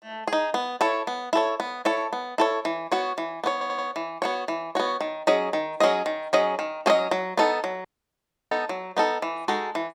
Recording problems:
stutter; at 3.5 s
audio cutting out; at 8 s for 0.5 s

